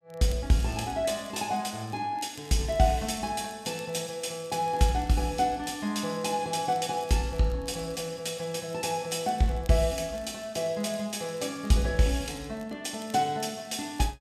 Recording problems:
crackling; vinyl, SNR 26 dB

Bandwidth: 14.5 kHz